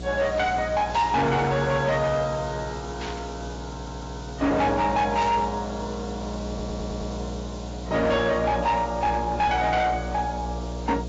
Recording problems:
lossy compression; AAC, log-spectral distance 7 dB, nothing above 7.3 kHz
distortion; hard clipping, signal-to-distortion ratio 11 dB
hum; 60 Hz, harmonics up to 720 Hz, SNR 11 dB
hiss; SNR 20 dB
burst of static; at 1 s, at 3 s and at 5 s; peak -7 dB vs average level
audio stuttering; at 3.5 s and at 6.5 s

